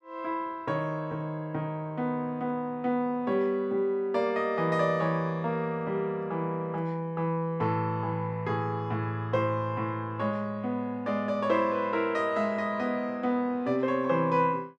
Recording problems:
none

